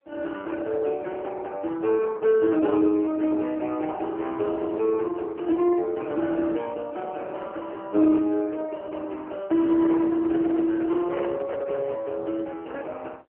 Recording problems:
telephone audio; 260 Hz to 3.3 kHz, AMR-NB
microphone handling noise; from 10 to 12 s; peak -6 dB vs average level

